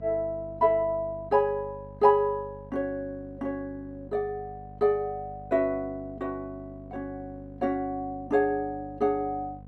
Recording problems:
electrical hum; 50 Hz, harmonics up to 800 Hz, SNR 18 dB

